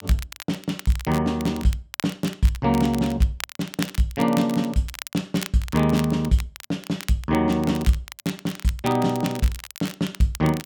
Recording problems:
crackle; vinyl, SNR 14 dB

